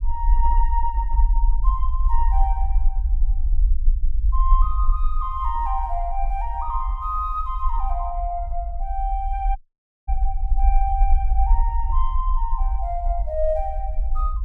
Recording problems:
rumble; below 48 Hz, SNR -4 dB
dropout; at 9.5 s for 0.5 s

